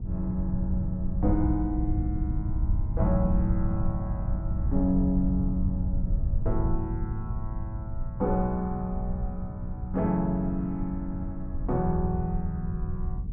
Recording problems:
electrical hum; 60 Hz, harmonics up to 480 Hz, SNR 14 dB
rumble; below 92 Hz, SNR 2 dB

